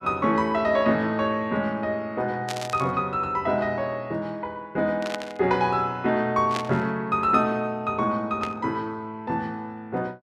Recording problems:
burst of static; 4 times, first at 2.5 s; peak -2 dB vs average level

